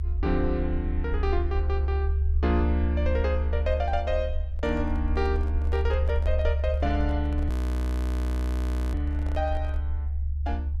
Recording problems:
low-frequency rumble; below 74 Hz, strongest tone 72 Hz, SNR -3 dB
microphone handling noise; from 4.5 to 10 s; peak -9 dB vs average level
frozen audio; at 7.5 s for 1.5 s

